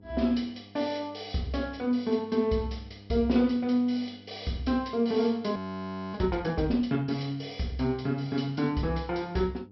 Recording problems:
treble missing; nothing above 5.5 kHz
electrical hum; 50 Hz, harmonics up to 900 Hz, SNR 24 dB
audio freezing; at 5.5 s for 0.5 s

